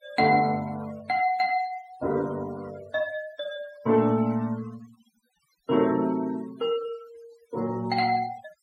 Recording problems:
denoising artefacts; signal-to-artefact ratio 21 dB

